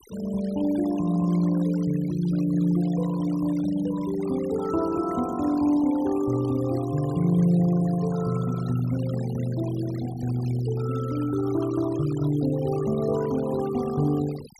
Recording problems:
noise reduction artefacts; signal-to-artefact ratio 18 dB

